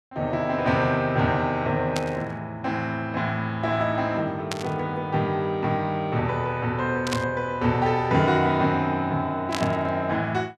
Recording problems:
burst of static; 4 times, first at 2 s; peak 0 dB vs average level

